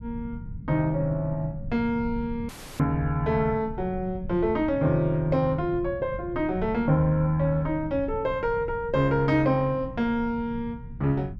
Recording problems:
rumble; below 160 Hz, SNR 13 dB
audio cutting out; at 2.5 s

